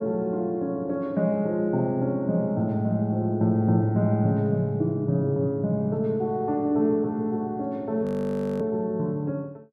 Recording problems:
audio freezing; at 8 s for 0.5 s

